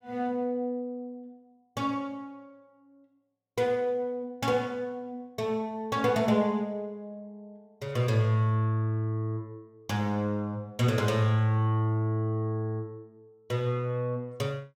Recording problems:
none

